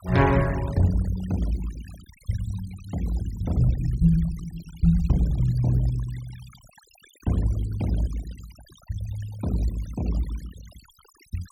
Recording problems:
noise reduction artefacts; signal-to-artefact ratio 20 dB

